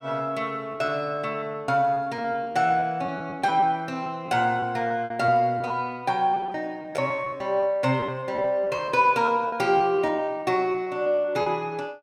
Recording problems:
packet loss; 12% of the sound replaced, filled with repeated pitch periods

